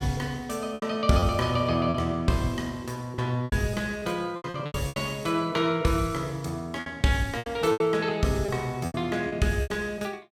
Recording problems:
packet loss; 10% of the sound replaced, filled with repeated pitch periods

